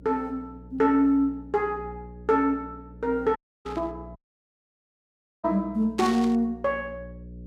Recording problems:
electrical hum; 60 Hz, harmonics up to 540 Hz, SNR 20 dB
audio cutting out; at 3.5 s and at 4 s for 1.5 s
burst of static; at 3.5 s and at 6 s; peak -4 dB vs average level

